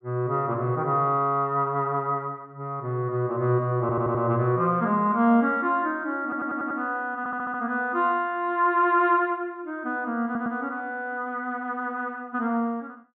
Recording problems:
stutter; 4 times, first at 4 s

